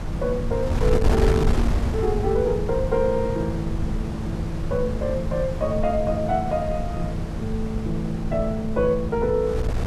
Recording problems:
electrical hum; 50 Hz, harmonics up to 600 Hz, SNR 11 dB
wind noise; below 130 Hz, SNR 3 dB

